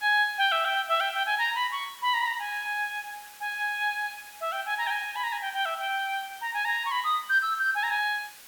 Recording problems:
background hiss; SNR 19 dB

